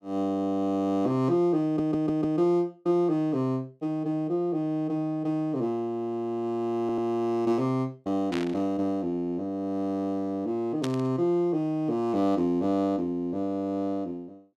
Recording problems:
stutter; at 1.5 s and at 7 s
burst of static; at 8.5 s and at 11 s; peak -4 dB vs average level

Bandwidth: 14 kHz